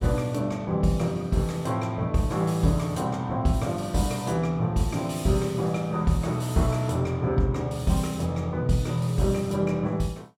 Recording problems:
none

